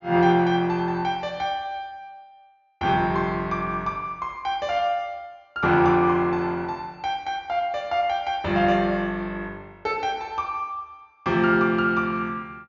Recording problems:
treble cut off; nothing above 7.1 kHz

